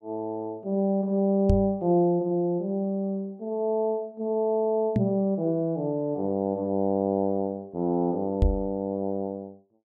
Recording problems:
microphone thump; at 1.5 s, at 5 s and at 8.5 s; peak +7 dB vs average level

